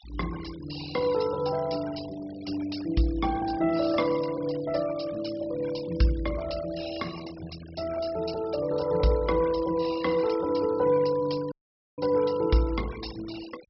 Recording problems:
treble missing; nothing above 5.6 kHz
denoising artefacts; signal-to-artefact ratio 17 dB
audio cutting out; at 12 s

